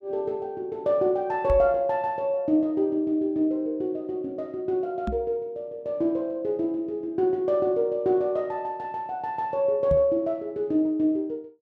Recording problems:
microphone thump; at 1.5 s, at 5 s and at 10 s; peak 0 dB vs average level

